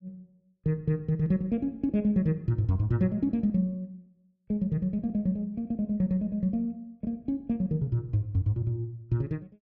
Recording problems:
none

